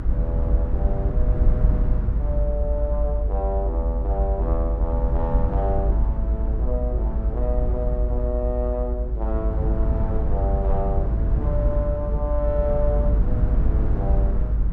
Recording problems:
low-frequency rumble; below 68 Hz, strongest tone 50 Hz, SNR -6 dB

